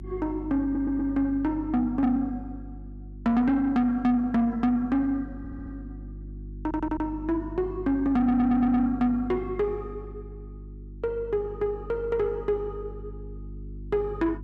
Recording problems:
distorted audio; soft clipping, signal-to-distortion ratio 11 dB
electrical hum; 50 Hz, harmonics up to 350 Hz, SNR 15 dB
audio stuttering; 4 times, first at 0.5 s

